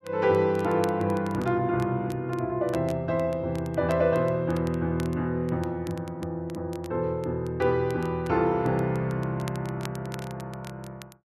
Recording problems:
crackle; vinyl, SNR 22 dB

